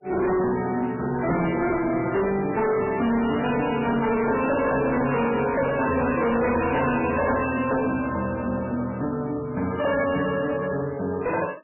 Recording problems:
lossy compression; MP3, log-spectral distance 5 dB, nothing above 2.8 kHz
distorted audio; hard clipping, uneven, signal-to-distortion ratio 8 dB

